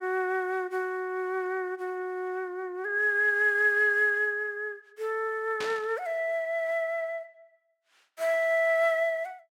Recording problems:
static burst; at 5.5 s; peak -5 dB vs average level

